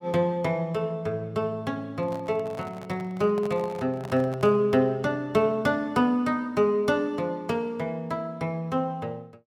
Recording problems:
handling noise; from 2 to 4.5 s; peak -9 dB vs average level

